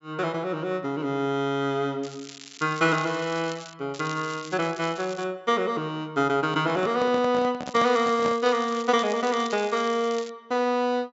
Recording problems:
low-pass filter; nothing above 8 kHz
crackle; from 2 to 3.5 s, from 4 to 5 s and from 7.5 to 10 s; loose cable, SNR 17 dB
microphone handling noise; from 6.5 to 8.5 s; peak -3 dB vs average level

